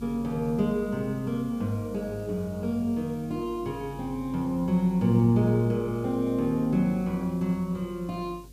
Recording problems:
hum; 50 Hz, harmonics up to 550 Hz, SNR 21 dB
hiss; SNR 28 dB

